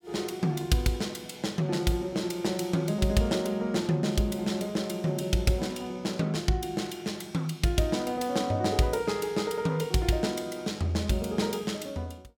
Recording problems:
none

